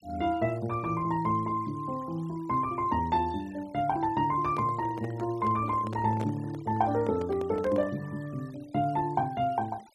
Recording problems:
noise reduction artefacts; signal-to-artefact ratio 24 dB
microphone handling noise; from 4.5 to 8 s; peak -5 dB vs average level

